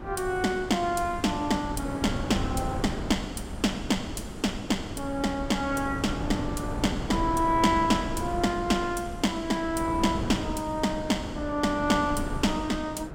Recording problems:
wind on the microphone; below 400 Hz, SNR 8 dB

